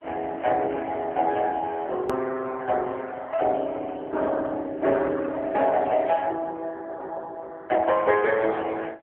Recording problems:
phone line; 260 Hz to 3 kHz, AMR-NB
click at an edit; at 2 s

